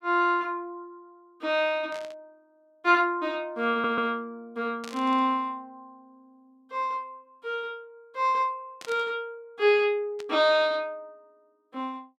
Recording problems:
burst of static; 4 times, first at 2 s; peak -10 dB vs average level
stutter; at 3.5 s

